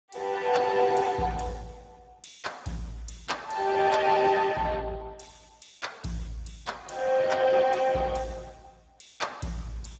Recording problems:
codec artefacts; Speex, log-spectral distance 5 dB, nothing above 7.6 kHz

